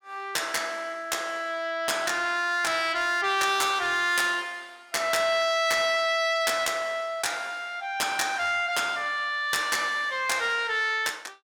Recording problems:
distortion; soft clipping, signal-to-distortion ratio 12 dB

